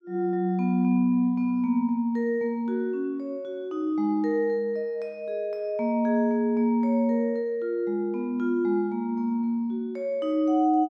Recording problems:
none

